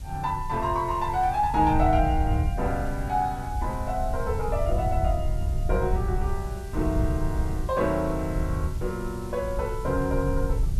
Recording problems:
hiss; SNR 21 dB
wind noise; below 88 Hz, SNR 3 dB

